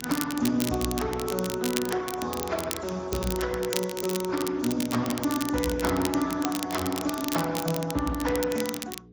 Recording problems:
lossy compression; AAC, then Speex, log-spectral distance 4 dB
hum; 60 Hz, harmonics up to 480 Hz, SNR 19 dB
crackling; vinyl, SNR 7 dB

